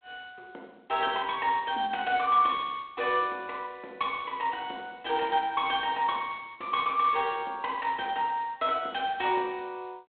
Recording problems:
phone line; 260 Hz to 3.5 kHz, G.726

